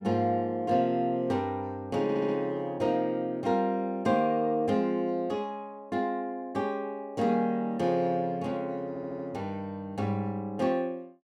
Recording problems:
audio stuttering; at 2 s and at 9 s

